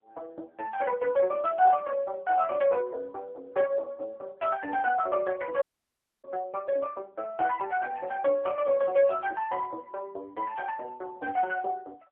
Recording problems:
phone line; 260 Hz to 2.3 kHz, AMR-NB
audio cutting out; at 5.5 s for 0.5 s

